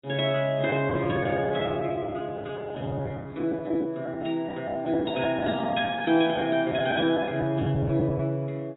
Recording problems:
lossy compression; AAC, log-spectral distance 2 dB, nothing above 3.4 kHz
lost packets; 12% of the sound replaced, filled with the last packet

